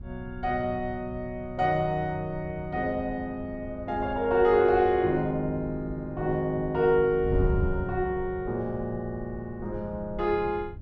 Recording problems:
wind noise; below 110 Hz, SNR 12 dB

